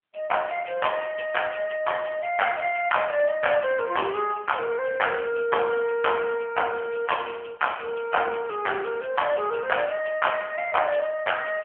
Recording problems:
phone line; 300 Hz to 3.2 kHz, AMR-NB

